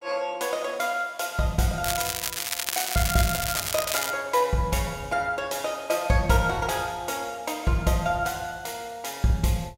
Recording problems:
crackle; from 2 to 4 s; loose cable, SNR 1 dB

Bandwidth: 16 kHz